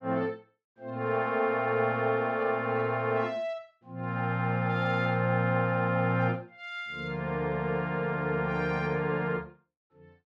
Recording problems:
none

